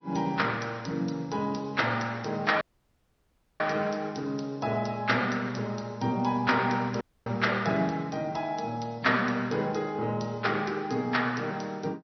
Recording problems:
low-pass filter; nothing above 5.8 kHz
lossy compression; MP3, log-spectral distance 4 dB
audio cutting out; at 2.5 s for 1 s and at 7 s

